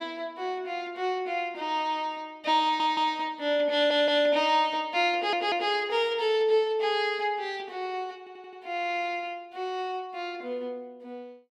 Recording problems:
stutter; 4 times, first at 2.5 s

